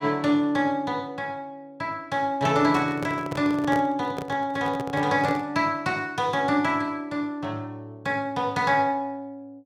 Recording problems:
microphone handling noise; from 2.5 to 5.5 s; peak -3 dB vs average level

